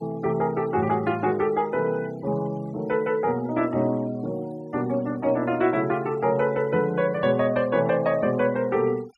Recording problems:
denoising artefacts; signal-to-artefact ratio 23 dB

